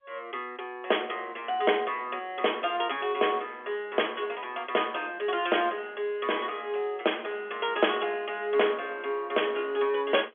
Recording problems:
telephone audio; 280 Hz to 3.4 kHz, G.711

